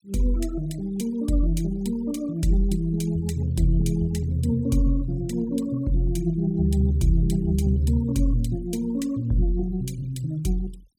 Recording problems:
noise reduction artefacts; signal-to-artefact ratio 25 dB

